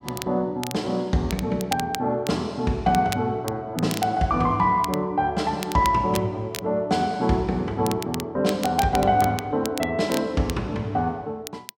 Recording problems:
crackle; vinyl, SNR 13 dB

